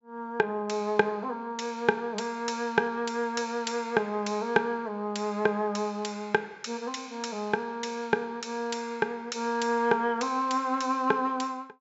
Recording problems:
treble cut off; nothing above 8 kHz

